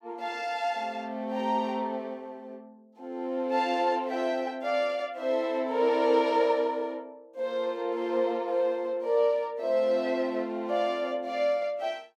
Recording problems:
none

